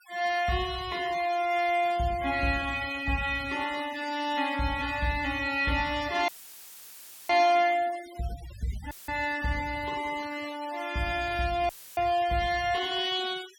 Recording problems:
denoising artefacts; signal-to-artefact ratio 16 dB
audio cutting out; at 6.5 s for 1 s, at 9 s and at 12 s; filled with static

